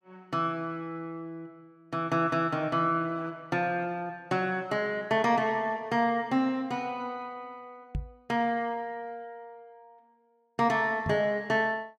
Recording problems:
knock on the microphone; at 8 s and at 11 s; peak -1 dB vs average level

